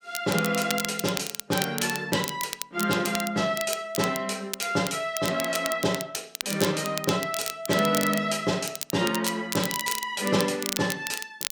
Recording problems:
crackling; vinyl, SNR 6 dB

